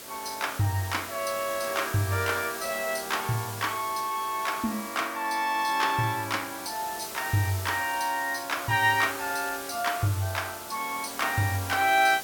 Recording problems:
background hiss; slope -2 dB per octave, SNR 10 dB

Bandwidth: 17.5 kHz